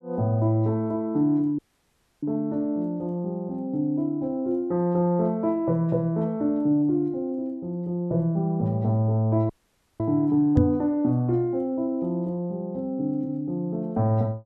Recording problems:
dropout; at 1.5 s for 0.5 s and at 9.5 s for 0.5 s
knock on the microphone; at 11 s; peak +8 dB vs average level

